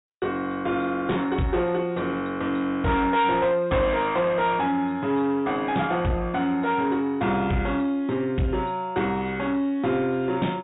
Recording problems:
low-pass filter; nothing above 4 kHz
distortion; soft clipping, signal-to-distortion ratio 11 dB

